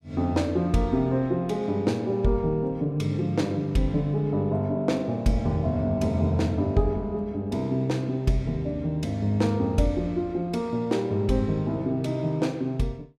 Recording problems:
none

